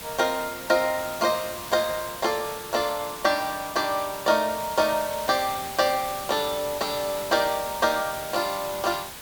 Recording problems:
background hiss; slope -1 dB per octave, SNR 10 dB

